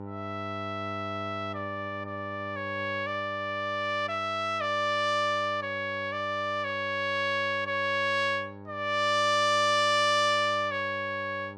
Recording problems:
electrical hum; 50 Hz, harmonics up to 1.5 kHz, SNR 15 dB

